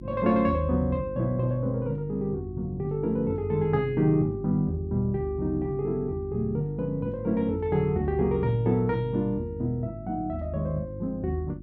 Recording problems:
mains hum; 50 Hz, harmonics up to 350 Hz, SNR 13 dB

